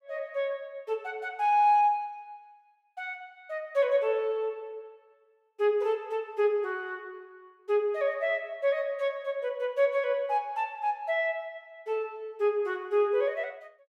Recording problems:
none

